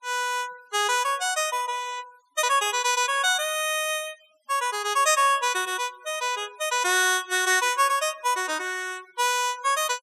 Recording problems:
noise reduction artefacts; signal-to-artefact ratio 22 dB

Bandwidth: 14.5 kHz